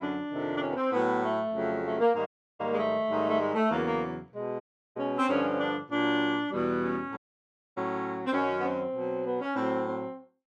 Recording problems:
dropout; at 2.5 s, at 4.5 s and at 7 s for 0.5 s

